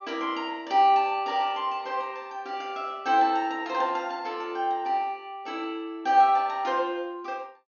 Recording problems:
treble cut off; nothing above 6.7 kHz

